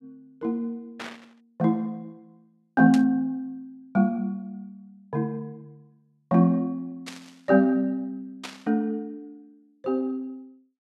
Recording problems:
static burst; 4 times, first at 1 s; peak -6 dB vs average level

